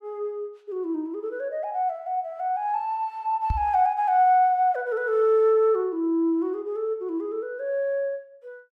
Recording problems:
microphone thump; at 3.5 s; peak +1 dB vs average level

